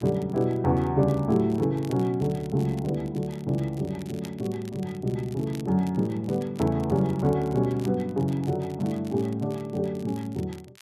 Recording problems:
crackling; vinyl, SNR 24 dB

